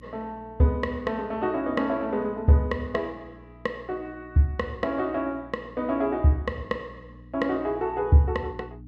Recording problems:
hum; 60 Hz, harmonics up to 300 Hz, SNR 22 dB

